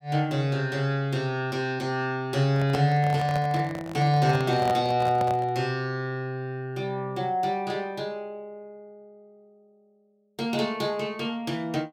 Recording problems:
microphone handling noise; from 2.5 to 5.5 s; peak -2 dB vs average level

